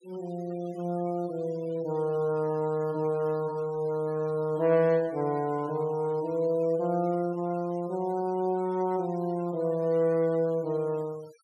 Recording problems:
denoising artefacts; signal-to-artefact ratio 25 dB

